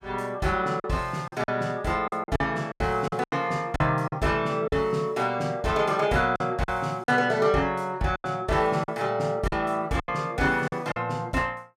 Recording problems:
packet loss; 9% of the sound replaced, filled with silence

